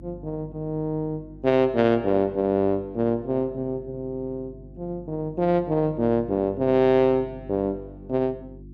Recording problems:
electrical hum; 50 Hz, harmonics up to 350 Hz, SNR 20 dB

